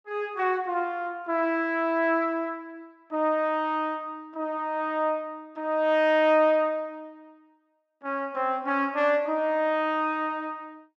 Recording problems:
none

